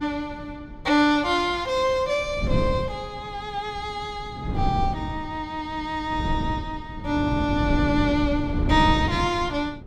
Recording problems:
wind on the microphone; below 200 Hz, SNR 4 dB

